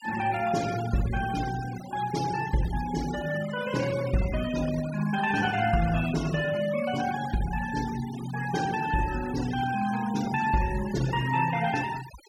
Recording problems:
denoising artefacts; signal-to-artefact ratio 13 dB

